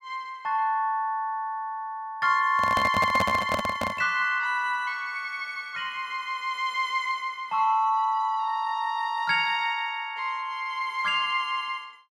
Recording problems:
microphone handling noise; from 2.5 to 4 s; peak +3 dB vs average level

